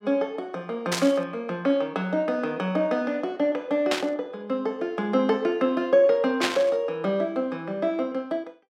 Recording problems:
static burst; at 1 s, at 4 s and at 6.5 s; peak +5 dB vs average level

